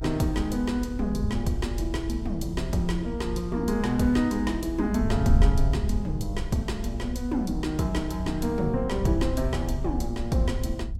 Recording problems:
low-frequency rumble; below 64 Hz, SNR 8 dB
wind on the microphone; below 88 Hz, SNR 3 dB

